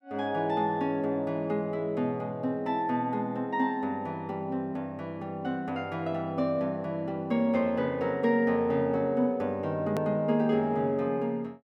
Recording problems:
click at an edit; at 10 s

